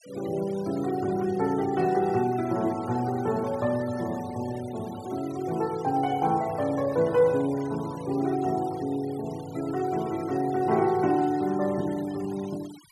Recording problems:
denoising artefacts; signal-to-artefact ratio 20 dB

